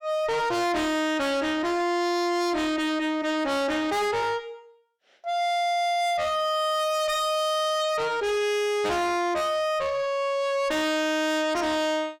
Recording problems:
distorted audio; soft clipping, signal-to-distortion ratio 5 dB

